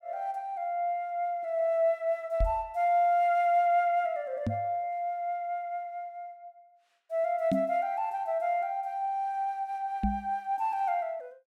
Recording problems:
microphone bump; 4 times, first at 2.5 s; peak +3 dB vs average level

